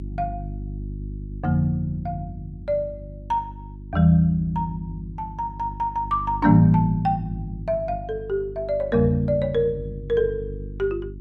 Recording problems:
electrical hum; 50 Hz, harmonics up to 350 Hz, SNR 13 dB

